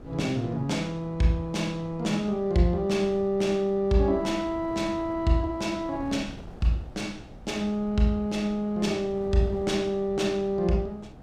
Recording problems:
wind noise; below 380 Hz, SNR 18 dB

